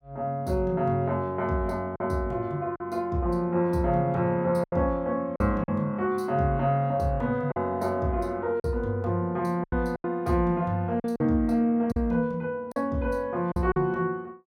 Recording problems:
lost packets; 5% of the sound replaced, filled with silence

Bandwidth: 16.5 kHz